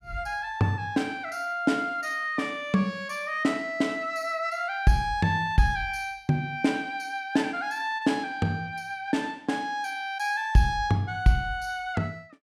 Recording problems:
none

